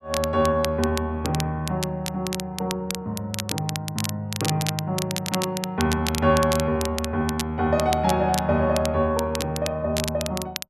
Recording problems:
crackling; vinyl, SNR 8 dB

